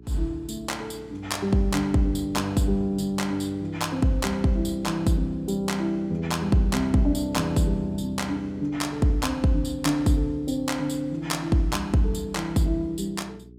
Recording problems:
hum; 60 Hz, harmonics up to 420 Hz, SNR 23 dB

